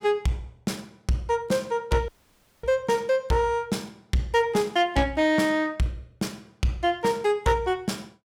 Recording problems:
distortion; soft clipping, signal-to-distortion ratio 11 dB
audio cutting out; at 2 s for 0.5 s

